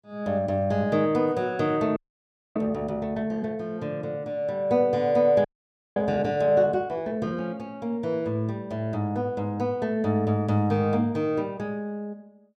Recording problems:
frozen audio; at 2 s for 0.5 s and at 5.5 s for 0.5 s

